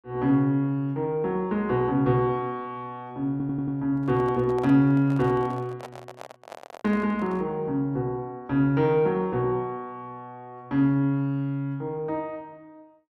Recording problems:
stutter; at 3.5 s
microphone handling noise; from 4 to 7.5 s; peak -10 dB vs average level

